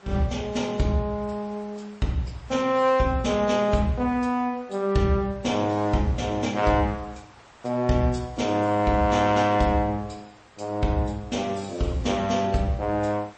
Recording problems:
lossy compression; MP3, log-spectral distance 4 dB, nothing above 8.2 kHz
hiss; SNR 26 dB

